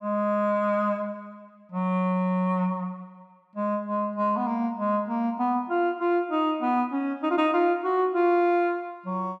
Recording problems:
none

